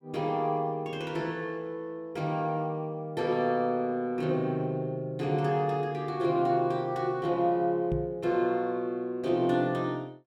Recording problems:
knock on the microphone; at 8 s; peak -1 dB vs average level

